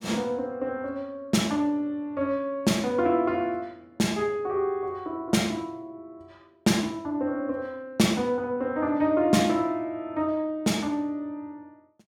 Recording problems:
none

